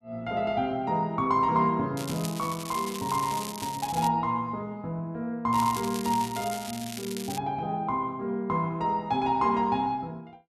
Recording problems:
crackle; from 2 to 4 s and from 5.5 to 7.5 s; loose cable, SNR 11 dB

